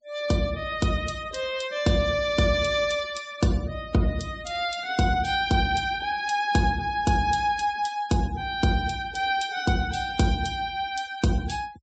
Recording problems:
treble missing; nothing above 8 kHz
denoising artefacts; signal-to-artefact ratio 20 dB

